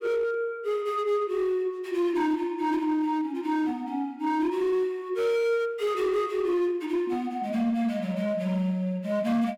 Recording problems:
distortion; hard clipping, uneven, signal-to-distortion ratio 11 dB

